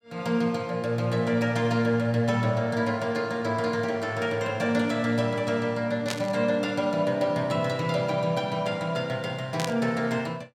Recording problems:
burst of static; at 6 s and at 9.5 s; peak 0 dB vs average level

